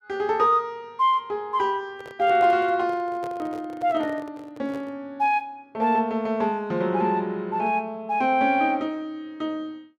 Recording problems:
handling noise; from 2 to 5 s; peak -10 dB vs average level

